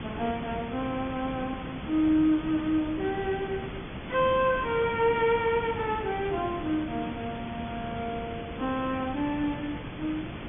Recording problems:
treble missing; nothing above 3.3 kHz
lossy codec; MP3, log-spectral distance 6 dB
hiss; SNR 9 dB

